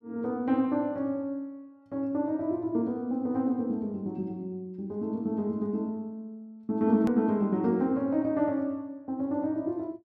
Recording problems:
click at an edit; at 7 s

